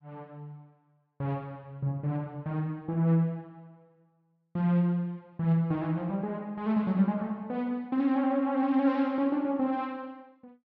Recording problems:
none

